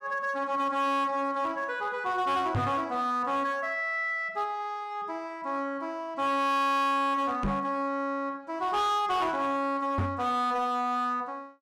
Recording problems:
distorted audio; hard clipping, signal-to-distortion ratio 11 dB
microphone thump; at 2.5 s, at 7.5 s and at 10 s; peak +3 dB vs average level

